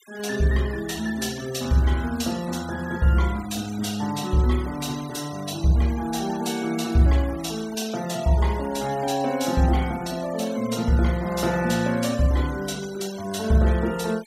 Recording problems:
denoising artefacts; signal-to-artefact ratio 18 dB

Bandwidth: 15.5 kHz